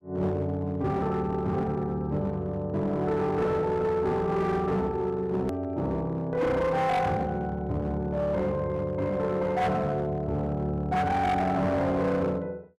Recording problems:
distorted audio; hard clipping, uneven, signal-to-distortion ratio 10 dB
hard cut with a click; at 5.5 s

